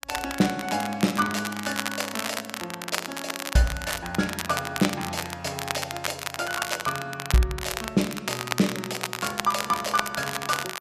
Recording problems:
crackling; vinyl, SNR 4 dB

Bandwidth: 14 kHz